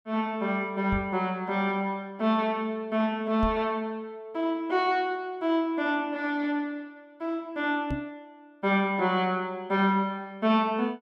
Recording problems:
knock on the microphone; at 1 s, at 3.5 s and at 8 s; peak 0 dB vs average level

